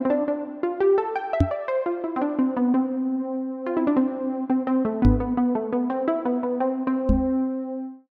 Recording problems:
microphone thump; at 1.5 s, at 5 s and at 7 s; peak +9 dB vs average level

